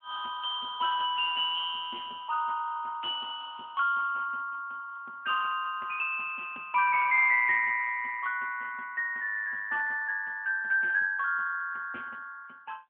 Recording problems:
telephone audio; 260 Hz to 3.4 kHz, AMR-NB

